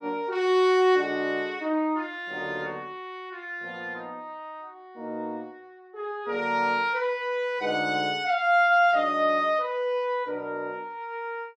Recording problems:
none

